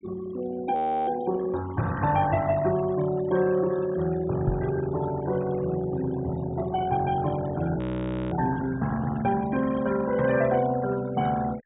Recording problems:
treble missing; nothing above 4 kHz
denoising artefacts; signal-to-artefact ratio 15 dB
frozen audio; at 1 s and at 8 s for 0.5 s
microphone thump; at 4.5 s; peak +2 dB vs average level

